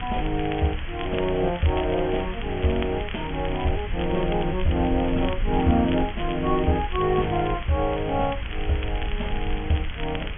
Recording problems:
treble cut off; nothing above 3.3 kHz
background hiss; SNR 13 dB
rumble; below 64 Hz, SNR 9 dB
crackle; vinyl, SNR 16 dB

